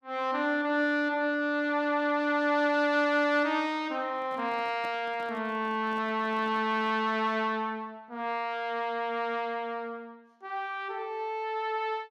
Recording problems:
handling noise; from 4 to 7 s; peak -11 dB vs average level

